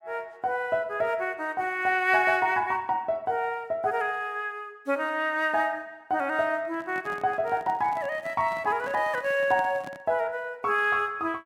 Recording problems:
handling noise; from 6.5 to 10 s; peak -10 dB vs average level

